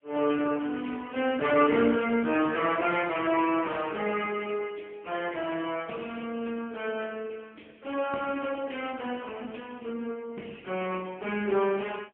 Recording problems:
phone line; 190 Hz to 3.2 kHz, AMR-NB, then MP3

